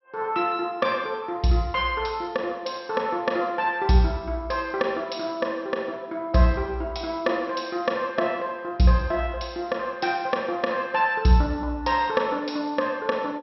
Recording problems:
low-pass filter; nothing above 5.7 kHz

